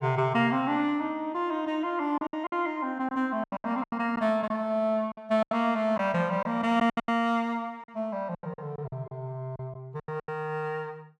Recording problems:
lost packets; 11% of the sound replaced, filled with silence

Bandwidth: 14.5 kHz